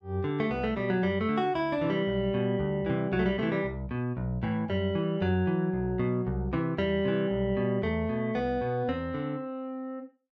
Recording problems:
none

